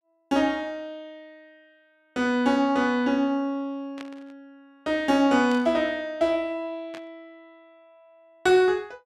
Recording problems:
burst of static; at 4 s, at 5.5 s and at 7 s; peak -13 dB vs average level

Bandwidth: 13.5 kHz